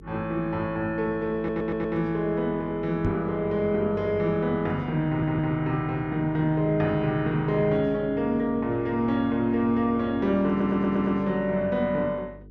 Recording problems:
electrical hum; 50 Hz, harmonics up to 450 Hz, SNR 21 dB
stutter; at 1.5 s, at 5 s and at 10 s
microphone thump; at 3 s; peak +1 dB vs average level

